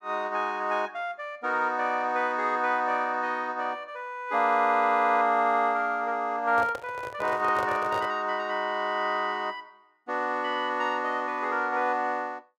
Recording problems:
microphone handling noise; from 6.5 to 8 s; peak -5 dB vs average level

